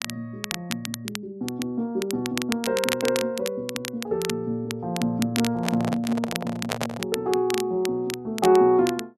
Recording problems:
crackling; vinyl, SNR 8 dB
microphone handling noise; from 5.5 to 7 s; peak 0 dB vs average level

